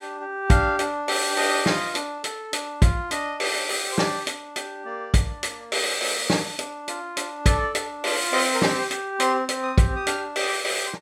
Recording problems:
none

